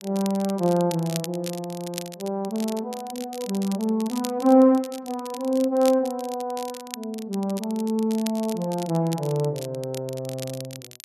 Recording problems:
crackle; vinyl, SNR 15 dB

